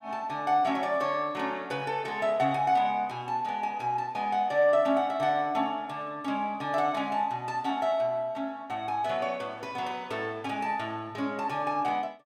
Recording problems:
none

